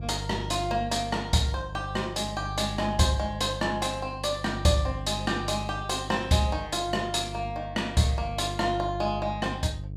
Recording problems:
hum; 50 Hz, harmonics up to 450 Hz, SNR 10 dB

